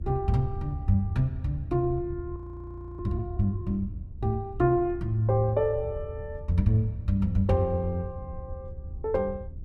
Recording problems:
rumble; below 82 Hz, SNR 12 dB
audio freezing; at 2.5 s for 0.5 s

